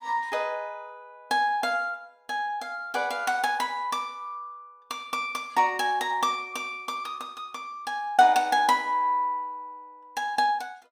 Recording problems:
none

